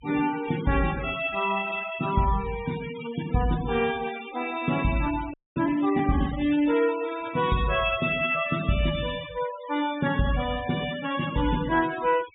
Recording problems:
treble missing; nothing above 4 kHz
denoising artefacts; signal-to-artefact ratio 14 dB
audio freezing; at 5.5 s

